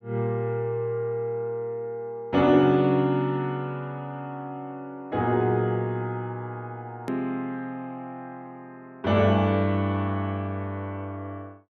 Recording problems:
hard cut with a click; at 7 s

